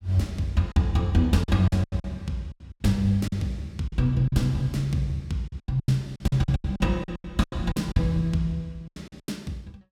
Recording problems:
packet loss; 14% of the sound replaced, filled with silence

